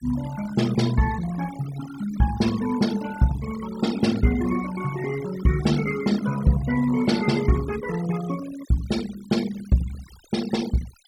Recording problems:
noise reduction artefacts; signal-to-artefact ratio 15 dB

